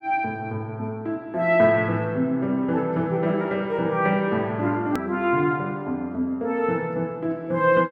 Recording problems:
click at an edit; at 5 s

